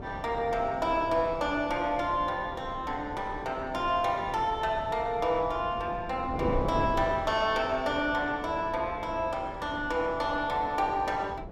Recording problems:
wind on the microphone; below 440 Hz, SNR 11 dB

